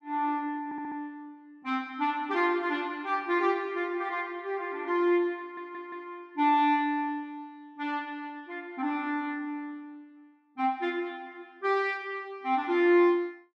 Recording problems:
stutter; at 0.5 s and at 5.5 s

